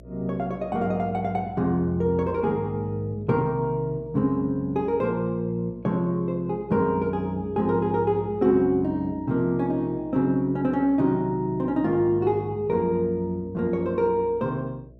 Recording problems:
hum; 60 Hz, harmonics up to 660 Hz, SNR 23 dB

